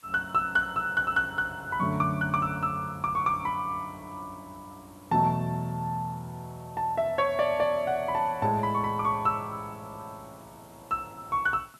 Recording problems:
hiss; slope 0 dB per octave, SNR 28 dB

